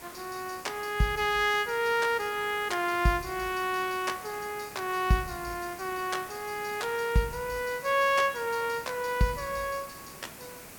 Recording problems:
background hiss; SNR 15 dB

